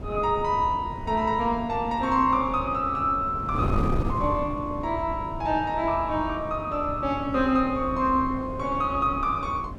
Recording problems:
wind noise; below 290 Hz, SNR 9 dB

